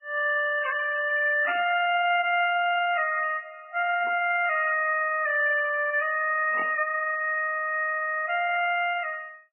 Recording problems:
codec artefacts; MP3, then Vorbis, log-spectral distance 4 dB, nothing above 2.8 kHz
static burst; at 1.5 s, at 4 s and at 6.5 s; peak -5 dB vs average level

